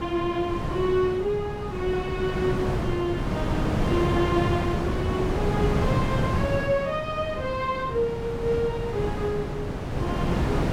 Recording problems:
wind on the microphone; below 460 Hz, SNR 0 dB

